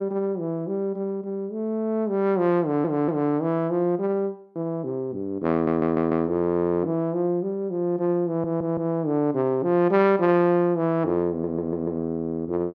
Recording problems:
stutter; 4 times, first at 2.5 s

